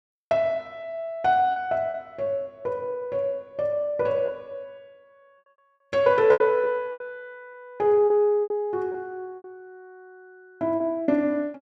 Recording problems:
packet loss; 7% of the sound replaced, filled with repeated pitch periods

